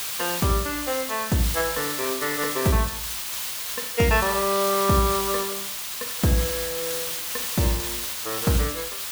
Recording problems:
hiss; slope +3 dB per octave, SNR 2 dB

